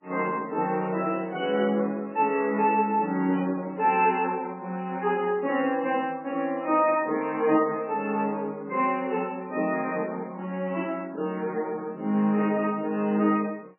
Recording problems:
codec artefacts; MP3, log-spectral distance 2 dB, nothing above 2.7 kHz

